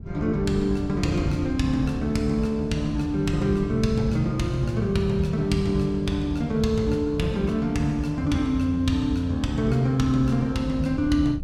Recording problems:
wind noise; below 140 Hz, SNR 16 dB

